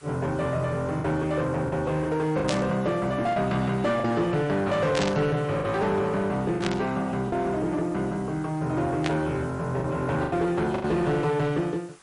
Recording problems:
codec artefacts; MP3, log-spectral distance 3 dB, nothing above 9.2 kHz
distorted audio; soft clipping, signal-to-distortion ratio 11 dB
background hiss; SNR 26 dB
lost packets; 4% of the sound replaced, filled with the last packet
static burst; 4 times, first at 2.5 s; peak 0 dB vs average level

